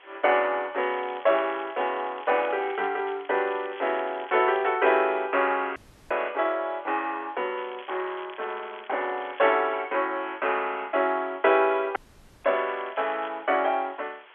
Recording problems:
telephone audio; 300 Hz to 3.5 kHz, G.711
hiss; SNR 26 dB
crackling; from 1 to 4.5 s, from 7.5 to 9.5 s and at 12 s; loose cable, SNR 21 dB
audio cutting out; at 6 s and at 12 s

